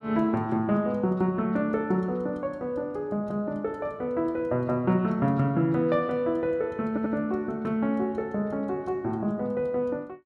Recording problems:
audio stuttering; at 7 s

